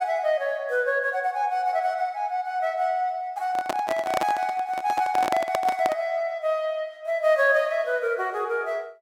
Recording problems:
microphone handling noise; from 3.5 to 6 s; peak +2 dB vs average level

